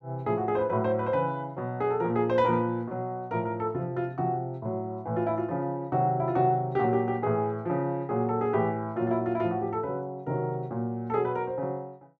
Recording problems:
none

